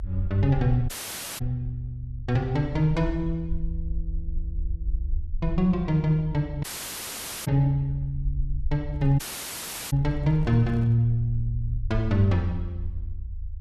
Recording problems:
low-frequency rumble; below 66 Hz, SNR 9 dB
audio cutting out; at 1 s for 0.5 s, at 6.5 s for 1 s and at 9 s for 0.5 s
microphone handling noise; from 9 to 11 s; peak -10 dB vs average level

